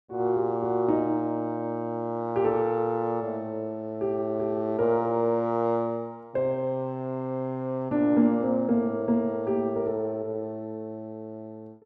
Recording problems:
none

